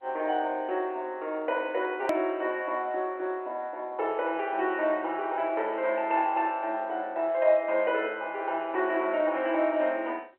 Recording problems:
phone line; 300 Hz to 3.1 kHz, G.711
edit click; at 2 s

